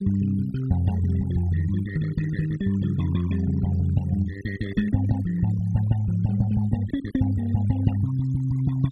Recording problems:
noise reduction artefacts; signal-to-artefact ratio 18 dB

